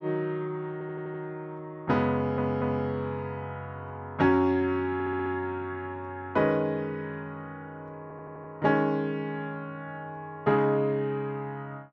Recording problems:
audio stuttering; 4 times, first at 0.5 s

